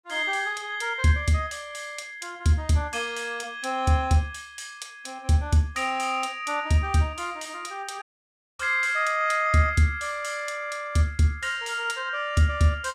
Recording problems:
dropout; at 8 s for 0.5 s

